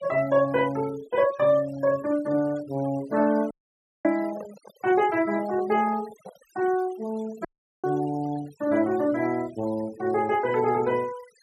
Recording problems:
denoising artefacts; signal-to-artefact ratio 21 dB
microphone handling noise; from 3 to 6.5 s; peak -12 dB vs average level
dropout; at 3.5 s for 0.5 s and at 7.5 s

